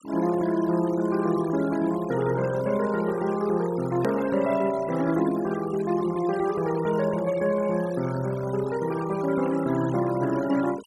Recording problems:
noise reduction artefacts; signal-to-artefact ratio 16 dB
edit click; at 4 s

